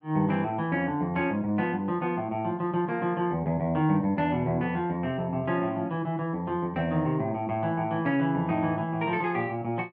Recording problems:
none

